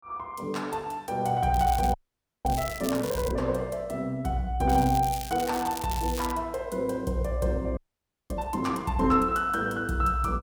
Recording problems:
crackling; from 1.5 to 3.5 s and from 4.5 to 6.5 s; loose cable, SNR 12 dB
audio freezing; at 2 s for 0.5 s and at 8 s for 0.5 s

